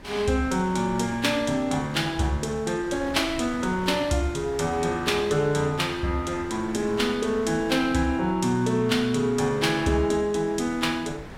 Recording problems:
wind noise; below 1.2 kHz, SNR 17 dB

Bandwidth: 16.5 kHz